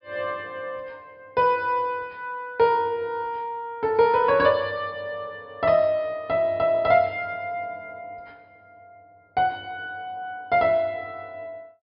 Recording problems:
treble cut off; nothing above 5.5 kHz

